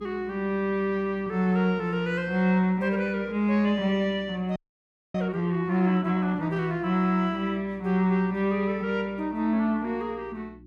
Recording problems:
electrical hum; 60 Hz, harmonics up to 360 Hz, SNR 25 dB
audio freezing; at 4.5 s for 0.5 s

